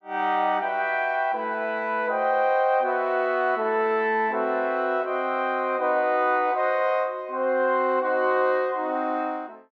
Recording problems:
none

